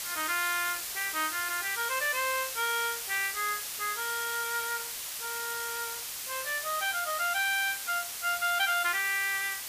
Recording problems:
background hiss; slope +3 dB per octave, SNR 4 dB

